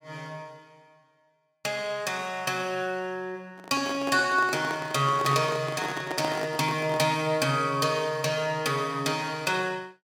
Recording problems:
microphone handling noise; from 3.5 to 7 s; peak -2 dB vs average level

